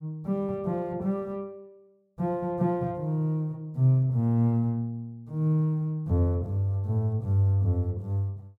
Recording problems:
none

